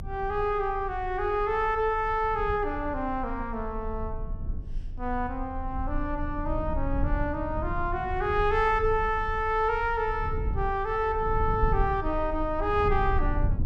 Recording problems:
rumble; below 78 Hz, strongest tone 24 Hz, SNR 7 dB

